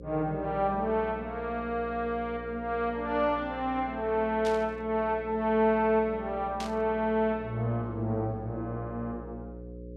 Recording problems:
electrical hum; 60 Hz, harmonics up to 540 Hz, SNR 15 dB
static burst; at 4.5 s and at 6.5 s; peak -5 dB vs average level

